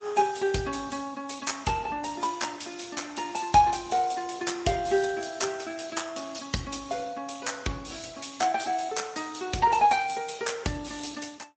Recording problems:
lossy compression; MP3, then Speex, log-spectral distance 8 dB, nothing above 7.8 kHz

